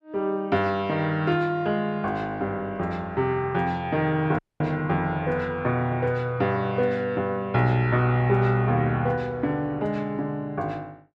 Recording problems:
dropout; at 4.5 s

